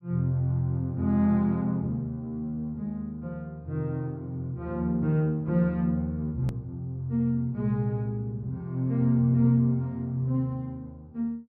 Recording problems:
treble cut off; nothing above 5.5 kHz
edit click; at 6.5 s

